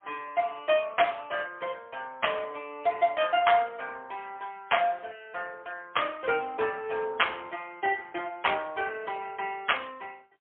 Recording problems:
telephone audio; 340 Hz to 3.3 kHz, AMR-NB, then MP3

